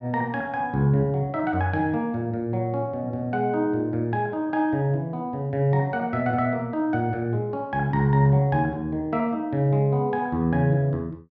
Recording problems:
none

